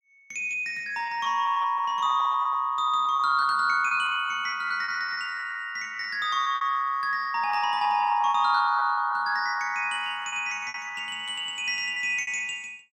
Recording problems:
packet loss; 13% of the sound replaced, filled with repeated pitch periods

